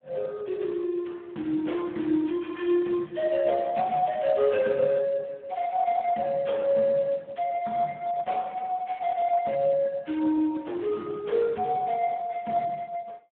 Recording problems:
telephone audio; 240 Hz to 3.4 kHz, Speex

